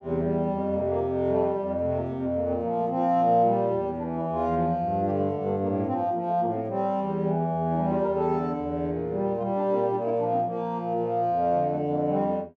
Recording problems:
none

